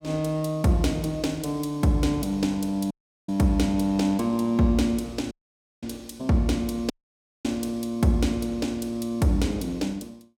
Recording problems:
dropout; at 3 s, at 5.5 s for 0.5 s and at 7 s for 0.5 s

